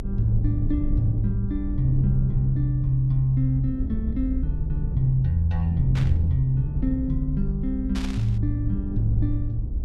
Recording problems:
low-frequency rumble; below 80 Hz, SNR 4 dB
burst of static; at 6 s and at 8 s; peak -8 dB vs average level

